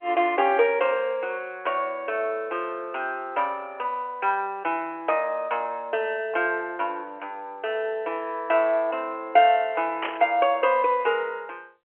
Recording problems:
phone line; 300 Hz to 3.2 kHz, G.711
static burst; at 10 s; peak -1 dB vs average level

